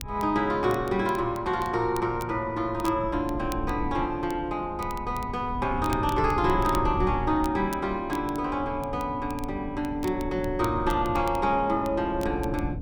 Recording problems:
wind noise; below 130 Hz, SNR 11 dB
crackling; vinyl, SNR 21 dB

